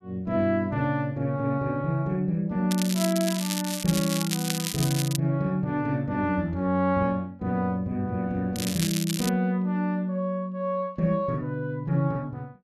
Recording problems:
crackle; from 2.5 to 5 s and at 8.5 s; loose cable, SNR 5 dB

